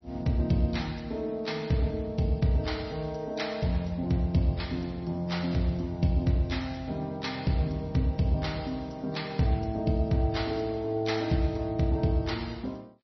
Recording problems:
lossy codec; MP3, log-spectral distance 4 dB, nothing above 5.8 kHz

